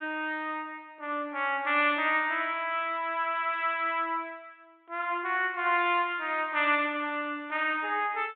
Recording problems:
low-pass filter; nothing above 4 kHz

